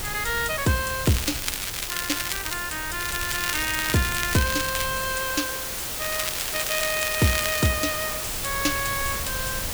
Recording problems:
background hiss; slope -1 dB per octave, SNR 3 dB
wind on the microphone; below 140 Hz, SNR 15 dB
crackling; from 1 to 2.5 s, from 3 to 5 s and from 6 to 7.5 s; loose cable, SNR 3 dB

